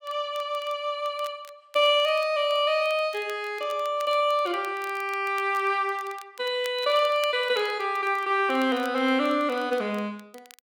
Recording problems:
crackling; vinyl, SNR 24 dB

